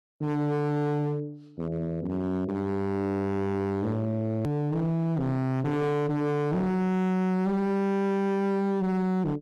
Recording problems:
distortion; hard clipping, signal-to-distortion ratio 6 dB
click at an edit; at 4.5 s

